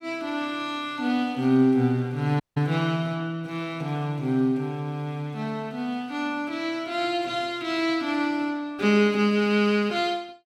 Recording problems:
audio cutting out; at 2.5 s

